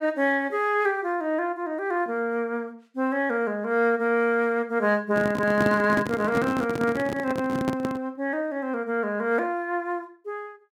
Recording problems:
handling noise; from 5 to 8 s; peak +2 dB vs average level

